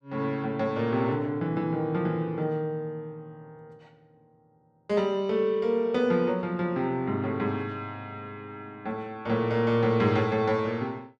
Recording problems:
none

